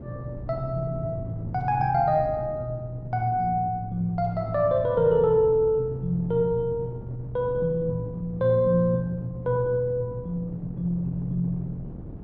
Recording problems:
wind noise; below 250 Hz, SNR 15 dB

